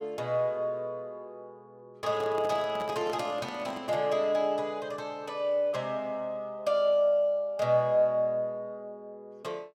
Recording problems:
handling noise; from 2 to 4 s; peak -7 dB vs average level

